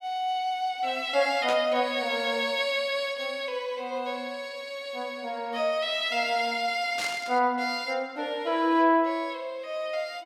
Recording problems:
burst of static; at 1.5 s and at 7 s; peak -3 dB vs average level

